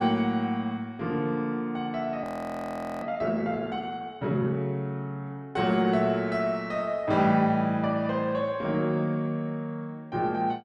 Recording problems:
audio freezing; at 2 s for 1 s

